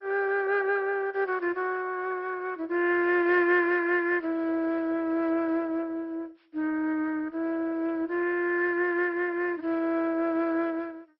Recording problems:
lossy compression; MP2, log-spectral distance 3 dB, nothing above 5.5 kHz

